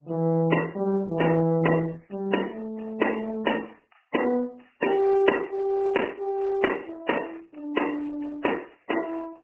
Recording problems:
codec artefacts; MP3, then Opus, log-spectral distance 8 dB, nothing above 2.9 kHz

